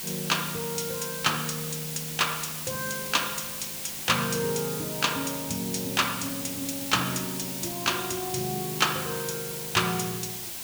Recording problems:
background hiss; SNR 4 dB

